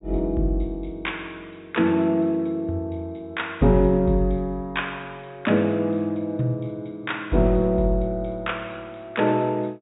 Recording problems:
low-pass filter; nothing above 4 kHz

